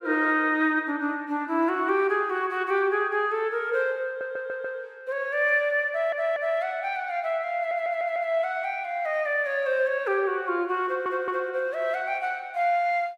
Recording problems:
audio stuttering; 4 times, first at 4 s

